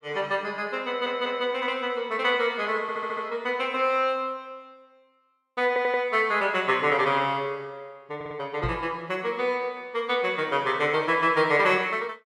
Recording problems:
stutter; 4 times, first at 1 s
microphone thump; at 8.5 s; peak -2 dB vs average level

